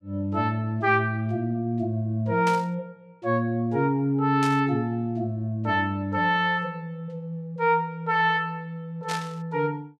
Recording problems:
burst of static; at 2.5 s, at 4.5 s and at 9 s; peak -4 dB vs average level

